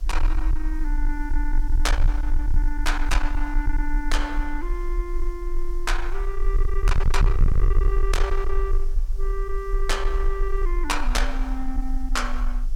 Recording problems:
distortion; soft clipping, signal-to-distortion ratio 7 dB
hiss; SNR 23 dB
rumble; below 40 Hz, strongest tone 20 Hz, SNR -3 dB

